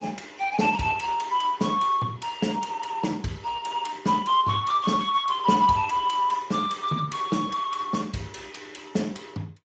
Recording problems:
codec artefacts; Speex, log-spectral distance 4 dB, nothing above 7.3 kHz

